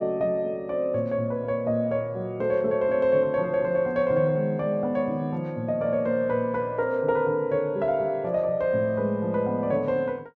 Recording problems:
none

